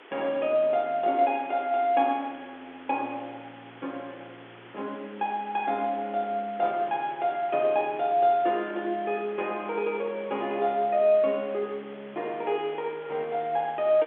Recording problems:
phone line; 280 Hz to 3.5 kHz, G.711
hiss; SNR 21 dB

